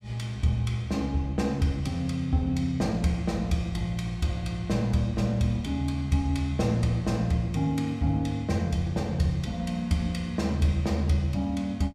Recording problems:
none

